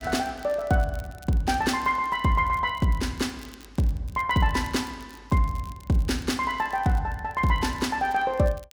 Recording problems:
crackling; vinyl, SNR 26 dB

